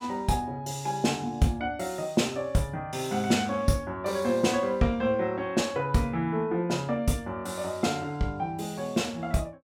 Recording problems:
none

